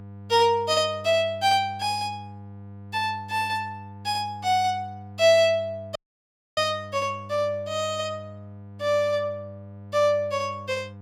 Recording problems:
hum; 50 Hz, harmonics up to 1.2 kHz, SNR 18 dB
audio cutting out; at 6 s for 0.5 s

